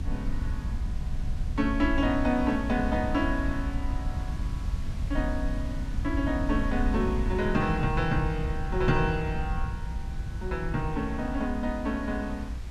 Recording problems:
hiss; slope -3 dB per octave, SNR 20 dB
rumble; below 80 Hz, SNR 4 dB

